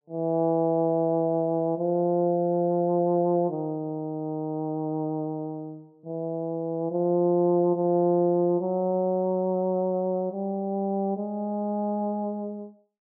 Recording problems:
none

